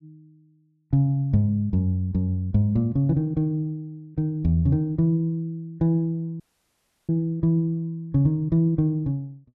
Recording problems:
dropout; at 6.5 s for 0.5 s

